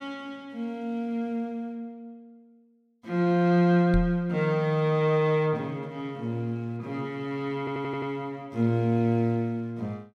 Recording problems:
microphone thump; at 4 s; peak +2 dB vs average level
stutter; at 7.5 s

